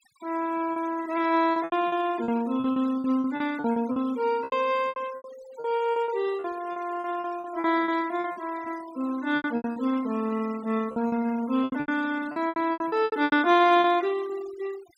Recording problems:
noise reduction artefacts; signal-to-artefact ratio 20 dB
packet loss; 15% of the sound replaced, filled with repeated pitch periods

